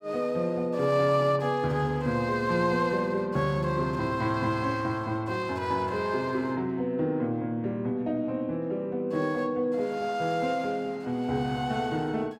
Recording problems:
none

